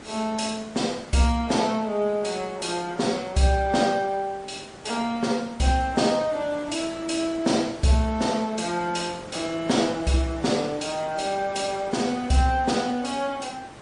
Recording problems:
codec artefacts; MP3, log-spectral distance 4 dB, nothing above 10.1 kHz
hiss; slope -5 dB per octave, SNR 18 dB

